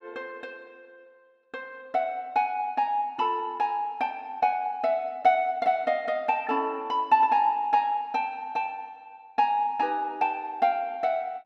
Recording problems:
none

